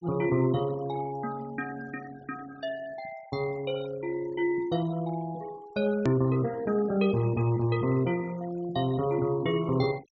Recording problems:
low-pass filter; nothing above 8 kHz
noise reduction artefacts; signal-to-artefact ratio 20 dB
edit click; at 6 s

